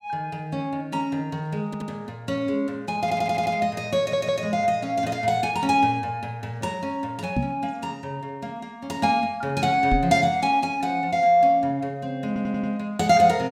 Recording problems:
stutter; 4 times, first at 1.5 s
microphone bump; at 7.5 s and at 10 s; peak +3 dB vs average level

